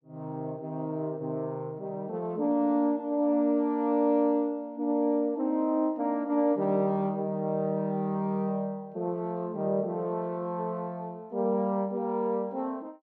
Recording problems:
none

